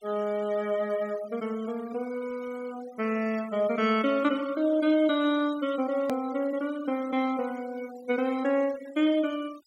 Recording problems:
noise reduction artefacts; signal-to-artefact ratio 20 dB
edit click; at 6 s

